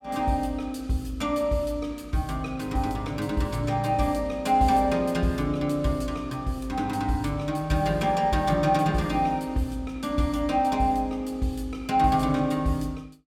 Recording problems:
none

